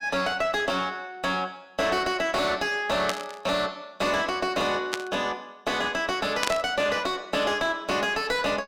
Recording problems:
distorted audio; soft clipping, signal-to-distortion ratio 7 dB
static burst; at 3 s, at 5 s and at 6.5 s; peak +4 dB vs average level

